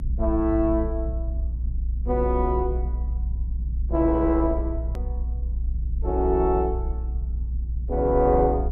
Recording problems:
low-frequency rumble; below 60 Hz, strongest tone 58 Hz, SNR 4 dB
hard cut with a click; at 5 s

